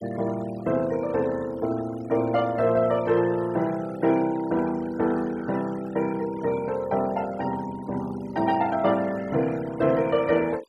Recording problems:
noise reduction artefacts; signal-to-artefact ratio 19 dB

